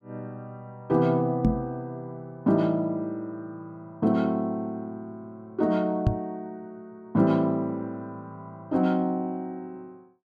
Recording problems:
knock on the microphone; at 1.5 s and at 6 s; peak +8 dB vs average level

